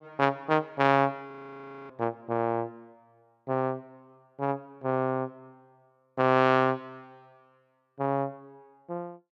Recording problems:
frozen audio; at 1.5 s for 0.5 s

